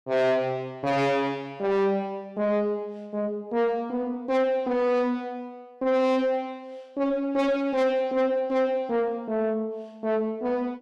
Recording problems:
distortion; soft clipping, signal-to-distortion ratio 7 dB

